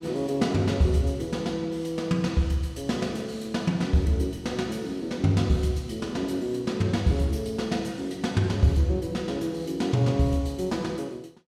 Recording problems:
none

